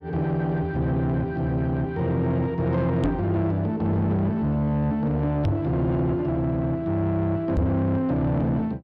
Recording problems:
distorted audio; soft clipping, signal-to-distortion ratio 10 dB
microphone bump; at 3 s, at 5.5 s and at 7.5 s; peak +4 dB vs average level

